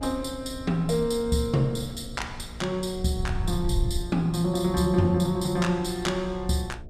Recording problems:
hum; 60 Hz, harmonics up to 720 Hz, SNR 20 dB
wind on the microphone; below 90 Hz, SNR 11 dB

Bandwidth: 14.5 kHz